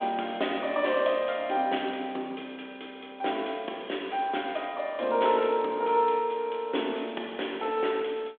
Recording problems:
phone line; 240 Hz to 3.5 kHz, G.726

